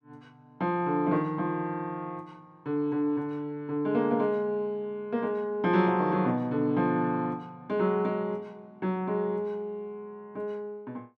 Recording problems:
none

